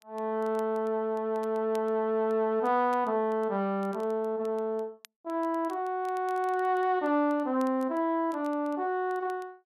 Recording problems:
crackling; vinyl, SNR 30 dB

